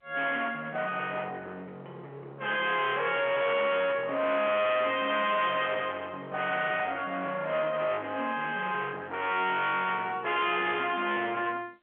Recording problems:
phone line; 240 Hz to 3.5 kHz, G.711
distortion; hard clipping, uneven, signal-to-distortion ratio 8 dB

